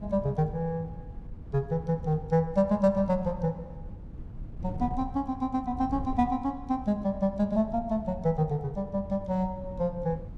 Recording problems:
wind on the microphone; below 140 Hz, SNR 13 dB

